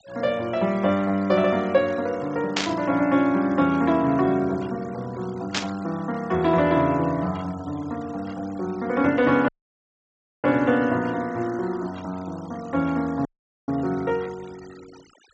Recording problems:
treble missing; nothing above 8 kHz
denoising artefacts; signal-to-artefact ratio 23 dB
burst of static; at 2.5 s and at 5.5 s; peak +4 dB vs average level
dropout; at 9.5 s for 1 s and at 13 s

